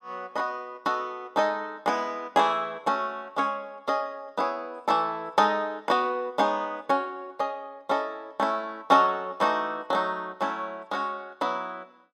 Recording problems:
none

